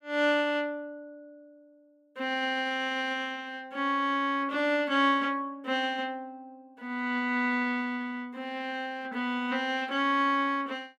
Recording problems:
none

